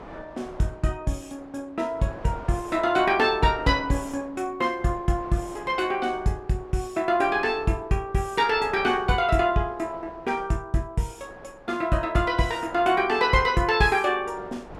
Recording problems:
wind noise; below 970 Hz, SNR 20 dB

